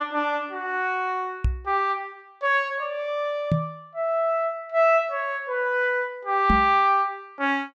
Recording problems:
microphone thump; at 1.5 s, at 3.5 s and at 6.5 s; peak +5 dB vs average level

